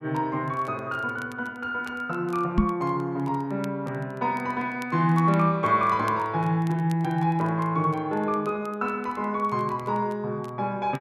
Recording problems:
crackling; vinyl, SNR 27 dB
microphone bump; at 2.5 s; peak +8 dB vs average level

